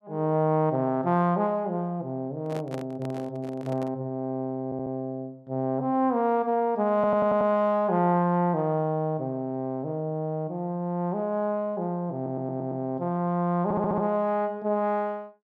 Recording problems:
handling noise; from 2.5 to 4 s; peak -6 dB vs average level
stutter; 4 times, first at 4.5 s

